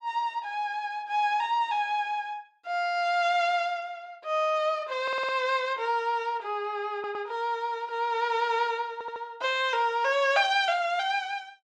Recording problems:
audio stuttering; at 5 s, at 7 s and at 9 s

